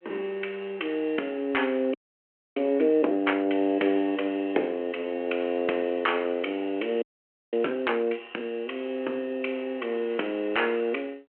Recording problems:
phone line; 240 Hz to 3.2 kHz, G.726
frozen audio; at 2 s for 0.5 s and at 7 s for 0.5 s

